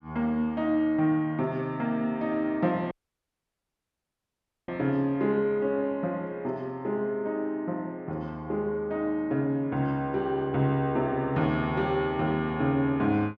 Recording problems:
audio cutting out; at 3 s for 2 s

